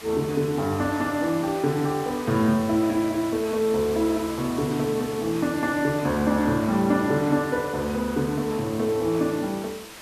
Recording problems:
hiss; slope -1 dB per octave, SNR 15 dB

